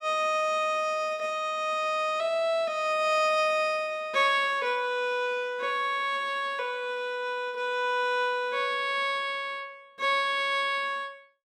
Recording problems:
none

